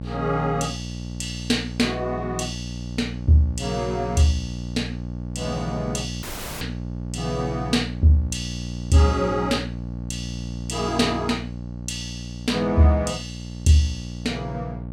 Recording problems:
hum; 60 Hz, harmonics up to 600 Hz, SNR 9 dB
dropout; at 6 s

